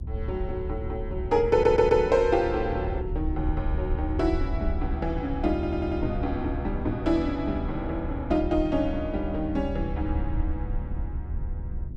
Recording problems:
hum; 50 Hz, harmonics up to 350 Hz, SNR 18 dB
low-frequency rumble; below 72 Hz, SNR 6 dB
audio stuttering; at 1.5 s and at 5.5 s

